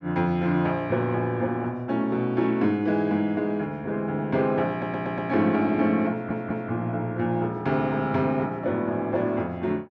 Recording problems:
audio stuttering; at 4.5 s and at 6 s

